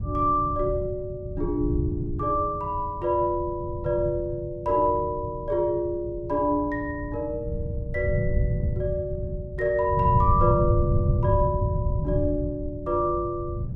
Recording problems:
wind noise; below 140 Hz, SNR 4 dB

